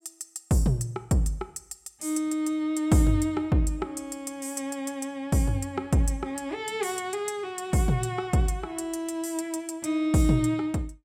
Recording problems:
none

